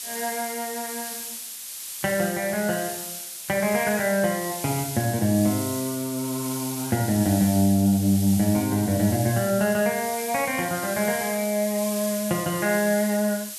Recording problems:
hiss; slope +4 dB per octave, SNR 8 dB

